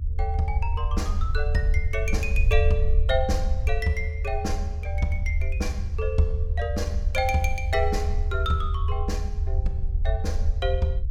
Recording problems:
low-frequency rumble; below 76 Hz, SNR -2 dB

